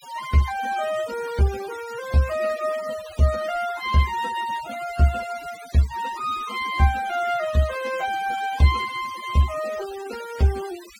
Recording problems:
denoising artefacts; signal-to-artefact ratio 16 dB

